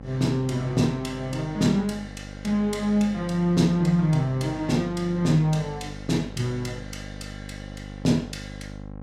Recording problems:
hum; 50 Hz, harmonics up to 1.1 kHz, SNR 15 dB

